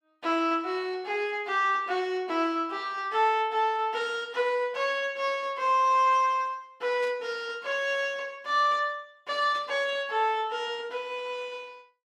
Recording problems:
burst of static; at 7 s and at 9.5 s; peak -14 dB vs average level

